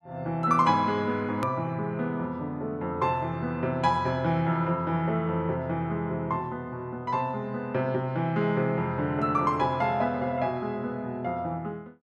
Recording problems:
click at an edit; at 1.5 s

